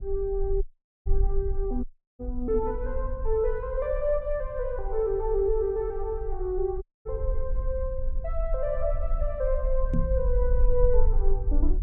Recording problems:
low-frequency rumble; below 44 Hz, SNR 2 dB
audio cutting out; at 0.5 s, at 2 s and at 7 s
knock on the microphone; at 10 s; peak +5 dB vs average level

